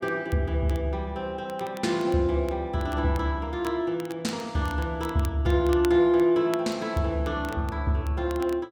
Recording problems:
crackling; vinyl, SNR 22 dB

